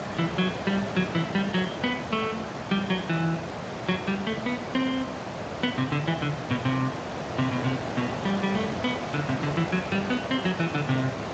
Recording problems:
lossy codec; Speex, log-spectral distance 6 dB
background hiss; SNR 5 dB

